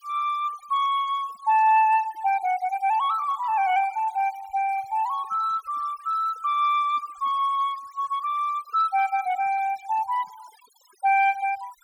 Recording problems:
denoising artefacts; signal-to-artefact ratio 23 dB

